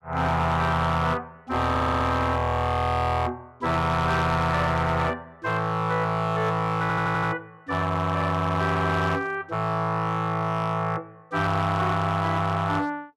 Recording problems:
distortion; hard clipping, uneven, signal-to-distortion ratio 10 dB
stutter; at 1.5 s and at 7 s

